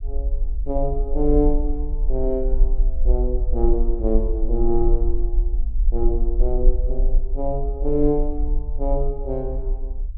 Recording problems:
rumble; below 42 Hz, strongest tone 24 Hz, SNR -1 dB

